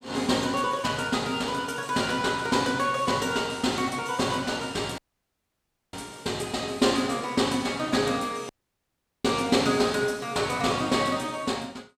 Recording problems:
dropout; at 5 s for 1 s and at 8.5 s for 1 s

